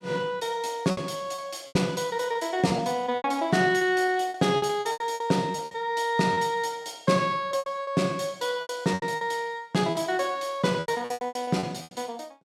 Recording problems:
packet loss; 14% of the sound replaced, filled with repeated pitch periods

